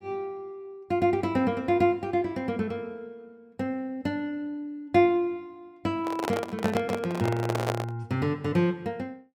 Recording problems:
handling noise; from 6 to 8 s; peak +4 dB vs average level

